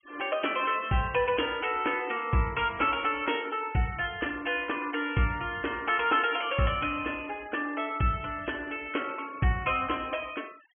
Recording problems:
low-pass filter; nothing above 3.3 kHz
denoising artefacts; signal-to-artefact ratio 23 dB

